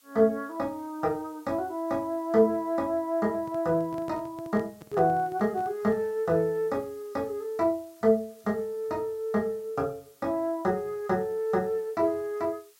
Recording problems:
hiss; slope +2 dB per octave, SNR 29 dB
handling noise; from 3.5 to 6 s; peak -11 dB vs average level

